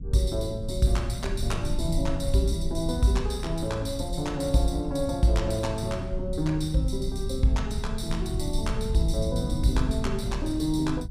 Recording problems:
rumble; below 96 Hz, SNR 5 dB

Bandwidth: 15 kHz